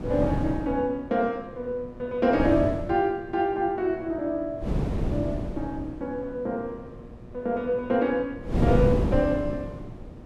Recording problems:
electrical hum; 60 Hz, harmonics up to 2.4 kHz, SNR 22 dB
wind noise; below 290 Hz, SNR 2 dB

